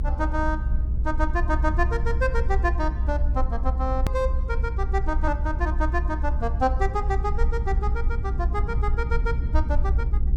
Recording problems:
rumble; below 62 Hz, SNR -3 dB
edit click; at 4 s

